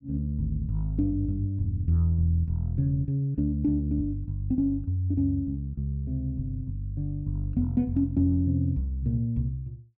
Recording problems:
none

